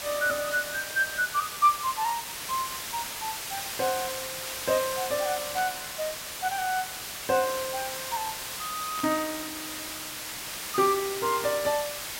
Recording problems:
background hiss; slope 0 dB per octave, SNR 5 dB
static burst; at 5.5 s and at 9 s; peak -7 dB vs average level

